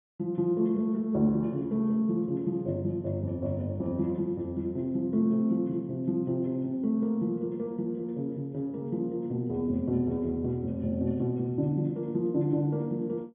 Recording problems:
treble missing; nothing above 3.5 kHz

